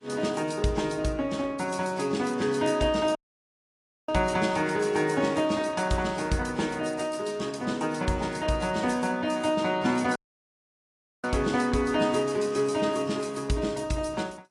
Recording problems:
lossy codec; AAC, log-spectral distance 4 dB, nothing above 10.4 kHz
audio cutting out; at 3 s for 1 s and at 10 s for 1 s

